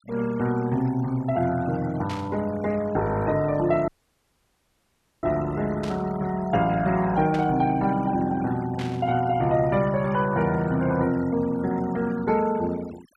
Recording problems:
noise reduction artefacts; signal-to-artefact ratio 20 dB
static burst; 4 times, first at 2 s; peak -9 dB vs average level
audio cutting out; at 4 s for 1.5 s

